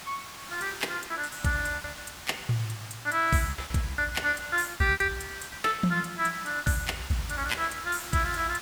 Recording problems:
background hiss; SNR 12 dB
lost packets; 13% of the sound replaced, filled with repeated pitch periods

